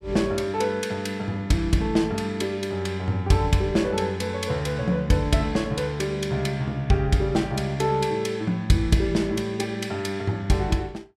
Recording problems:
none

